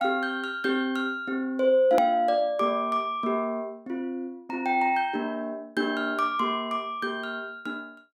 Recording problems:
edit click; at 2 s

